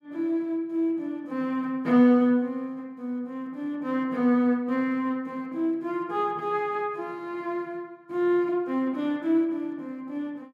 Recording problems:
none

